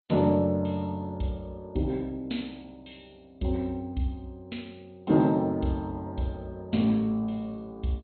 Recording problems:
lossy codec; MP2, log-spectral distance 3 dB, nothing above 4.2 kHz

